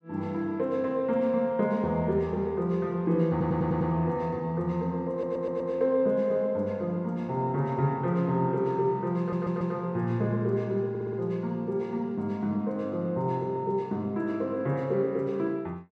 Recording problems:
audio stuttering; 4 times, first at 3.5 s

